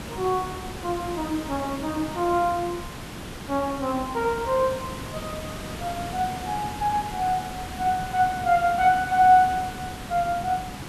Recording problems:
background hiss; slope -4 dB per octave, SNR 11 dB

